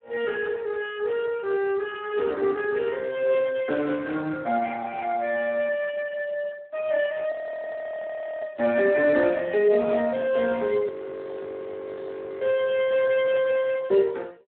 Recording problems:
phone line; 260 Hz to 3.5 kHz, Speex
audio freezing; at 7.5 s for 1 s and at 11 s for 1.5 s

